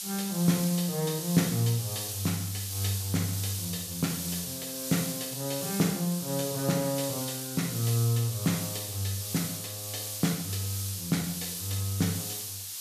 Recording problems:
hiss; SNR 4 dB

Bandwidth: 14.5 kHz